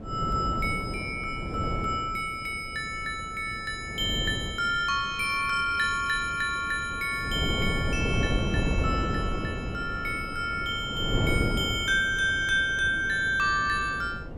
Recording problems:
wind on the microphone; below 340 Hz, SNR 6 dB

